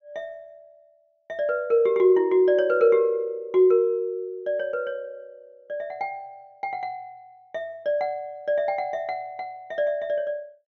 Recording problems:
treble missing; nothing above 6.4 kHz

